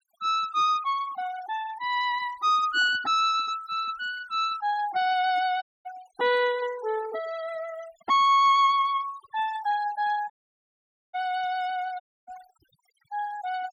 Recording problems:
denoising artefacts; signal-to-artefact ratio 18 dB
audio cutting out; at 5.5 s, at 10 s for 1 s and at 12 s

